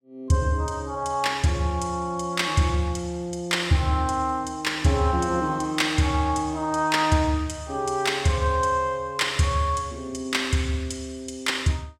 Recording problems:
none

